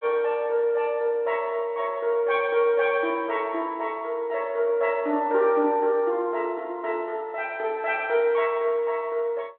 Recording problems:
telephone audio; 240 Hz to 3.9 kHz, G.726

